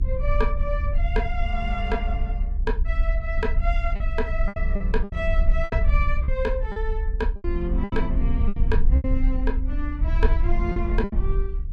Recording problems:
low-frequency rumble; below 60 Hz, SNR -4 dB
lost packets; 7% of the sound replaced, filled with repeated pitch periods

